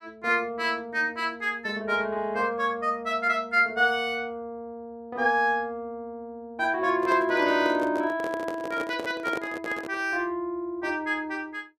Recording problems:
microphone handling noise; from 7 to 10 s; peak -3 dB vs average level

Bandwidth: 14.5 kHz